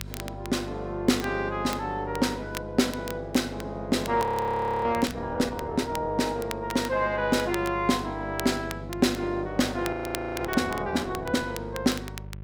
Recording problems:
electrical hum; 50 Hz, harmonics up to 550 Hz, SNR 14 dB
crackle; vinyl, SNR 15 dB
audio freezing; at 4 s for 0.5 s and at 10 s

